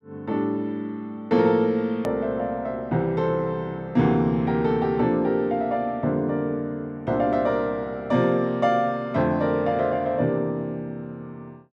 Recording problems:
edit click; at 2 s

